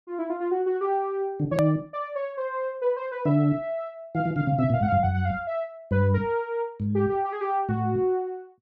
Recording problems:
edit click; at 1.5 s

